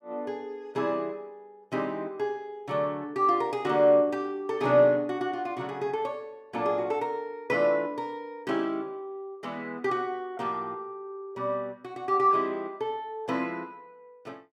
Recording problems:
none

